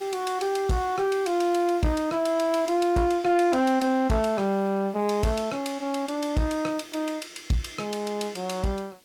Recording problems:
distorted audio; soft clipping, signal-to-distortion ratio 11 dB
background hiss; SNR 28 dB

